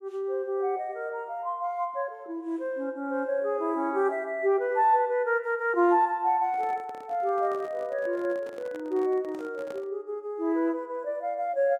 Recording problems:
microphone handling noise; from 6.5 to 10 s; peak -10 dB vs average level

